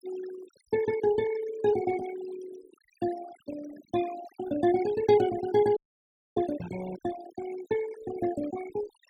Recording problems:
denoising artefacts; signal-to-artefact ratio 14 dB
frozen audio; at 6 s for 0.5 s

